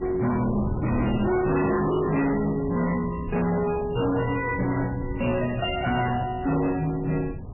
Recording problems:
codec artefacts; MP3, log-spectral distance 4 dB, nothing above 2.6 kHz
distortion; hard clipping, uneven, signal-to-distortion ratio 6 dB
wind on the microphone; below 240 Hz, SNR 10 dB

